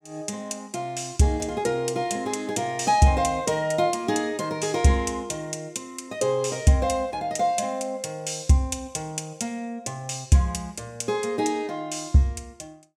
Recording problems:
none

